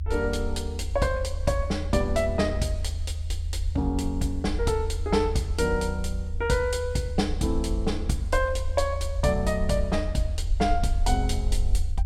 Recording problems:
low-frequency rumble; below 78 Hz, SNR 3 dB

